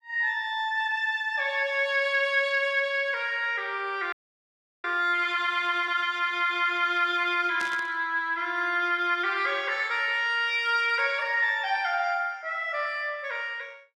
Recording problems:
frozen audio; at 4 s for 0.5 s
burst of static; at 7.5 s; peak -8 dB vs average level

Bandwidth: 13 kHz